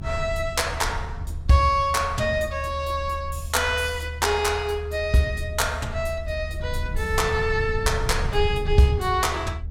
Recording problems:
rumble; below 82 Hz, SNR 8 dB

